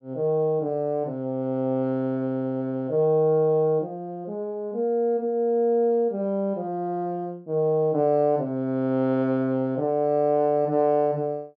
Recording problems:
none

